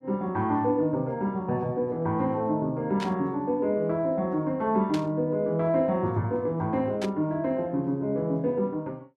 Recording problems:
burst of static; at 3 s, at 5 s and at 7 s; peak -5 dB vs average level

